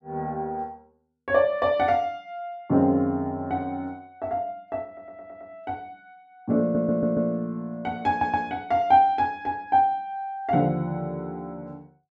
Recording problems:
stutter; at 5 s, at 6.5 s and at 8 s

